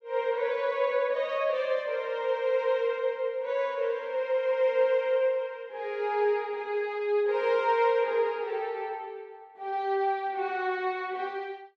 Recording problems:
none

